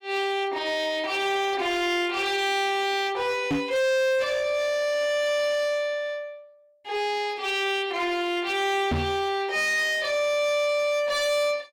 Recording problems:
distortion; hard clipping, signal-to-distortion ratio 7 dB
microphone thump; at 3.5 s and at 9 s; peak +2 dB vs average level

